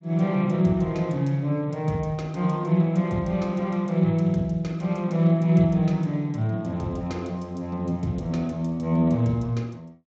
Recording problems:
codec artefacts; Speex, log-spectral distance 2 dB, nothing above 16 kHz

